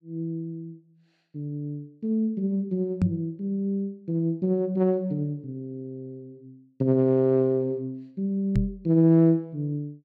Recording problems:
knock on the microphone; at 3 s and at 8.5 s; peak +6 dB vs average level

